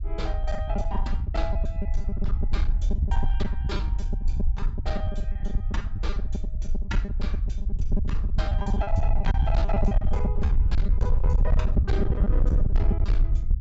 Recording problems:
treble missing; nothing above 8 kHz
distortion; hard clipping, uneven, signal-to-distortion ratio 10 dB
low-frequency rumble; below 68 Hz, SNR -9 dB
lost packets; 16% of the sound replaced, filled with repeated pitch periods

